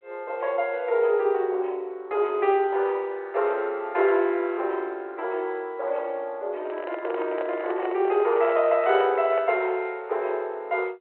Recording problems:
phone line; 320 Hz to 3.1 kHz, G.726
microphone handling noise; from 6.5 to 9.5 s; peak -4 dB vs average level

